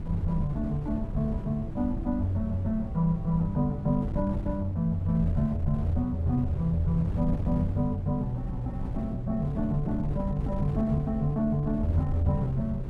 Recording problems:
wind on the microphone; below 130 Hz, SNR 6 dB

